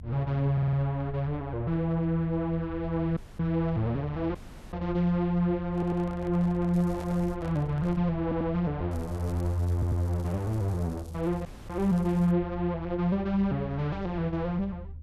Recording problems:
low-frequency rumble; below 80 Hz, strongest tone 78 Hz, SNR 14 dB
audio stuttering; 4 times, first at 0.5 s
dropout; at 3 s, at 4.5 s and at 11 s
handling noise; from 5.5 to 8 s; peak -11 dB vs average level
crackle; at 6.5 s and from 9 to 12 s; loose cable, SNR 27 dB

